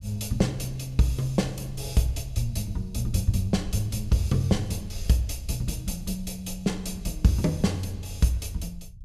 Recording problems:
low-frequency rumble; below 86 Hz, SNR 13 dB

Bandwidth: 14 kHz